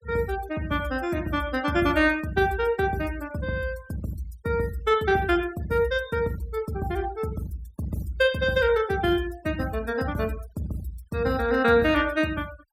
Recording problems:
denoising artefacts; signal-to-artefact ratio 23 dB

